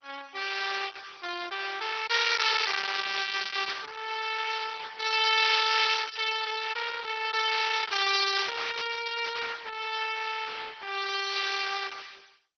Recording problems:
lossy compression; MP2, then Opus, log-spectral distance 10 dB, nothing above 5.8 kHz

